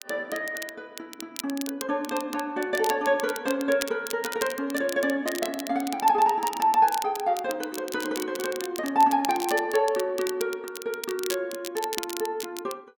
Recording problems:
crackle; vinyl, SNR 11 dB

